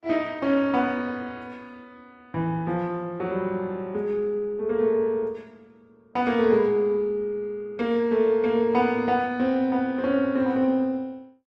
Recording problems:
lossy codec; Opus, log-spectral distance 2 dB

